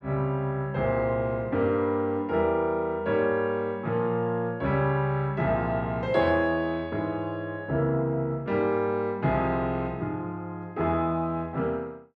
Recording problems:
none

